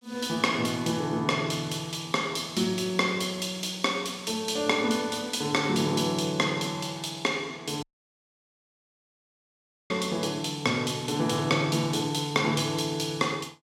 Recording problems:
audio cutting out; at 8 s for 2 s

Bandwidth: 16 kHz